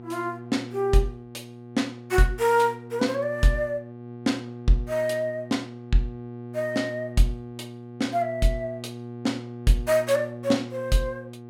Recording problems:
hum; 60 Hz, harmonics up to 1.2 kHz, SNR 13 dB

